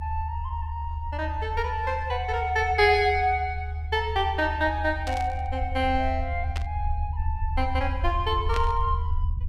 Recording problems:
low-frequency rumble; below 78 Hz, strongest tone 76 Hz, SNR 5 dB
static burst; at 5 s, at 6.5 s and at 8.5 s; peak -4 dB vs average level

